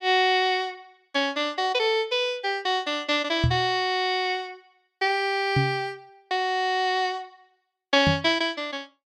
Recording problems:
microphone thump; at 3.5 s, at 5.5 s and at 8 s; peak +4 dB vs average level

